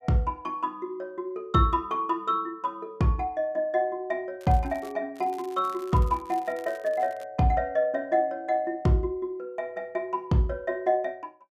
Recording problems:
crackling; at 4.5 s and from 5 to 7.5 s; loose cable, SNR 25 dB

